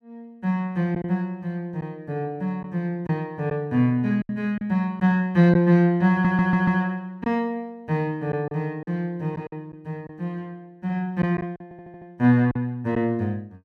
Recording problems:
packet loss; 4% of the sound replaced, filled with silence
audio stuttering; at 6 s and at 12 s

